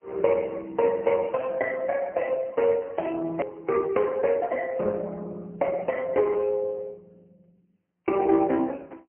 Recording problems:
phone line; 220 Hz to 3.1 kHz, AMR-NB, then MP3
edit click; at 3.5 s

